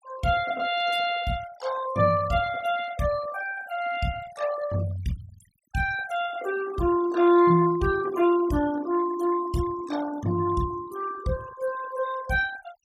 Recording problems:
denoising artefacts; signal-to-artefact ratio 17 dB

